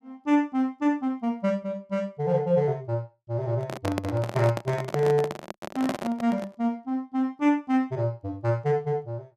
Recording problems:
microphone handling noise; from 3.5 to 6.5 s; peak +2 dB vs average level

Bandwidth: 14 kHz